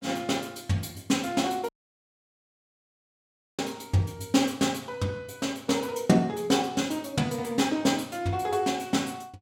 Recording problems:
dropout; at 1.5 s for 2 s

